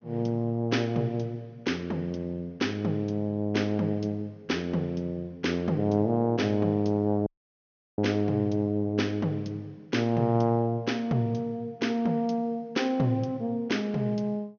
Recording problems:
treble missing; nothing above 6.4 kHz
dropout; at 7.5 s for 0.5 s

